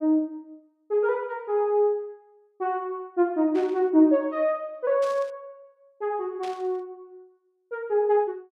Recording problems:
static burst; at 3.5 s, at 5 s and at 6.5 s; peak -13 dB vs average level

